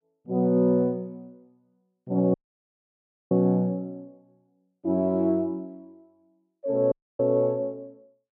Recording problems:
audio cutting out; at 2.5 s for 1 s and at 7 s

